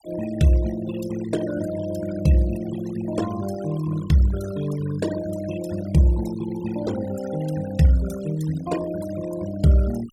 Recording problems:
noise reduction artefacts; signal-to-artefact ratio 15 dB

